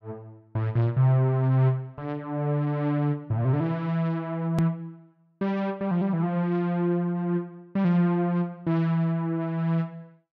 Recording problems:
edit click; at 4.5 s

